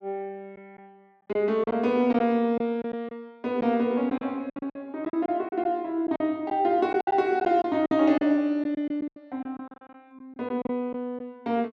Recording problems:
packet loss; 10% of the sound replaced, filled with silence

